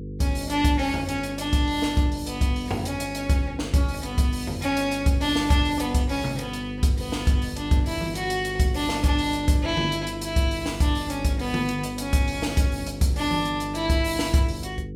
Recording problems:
electrical hum; 50 Hz, harmonics up to 500 Hz, SNR 12 dB

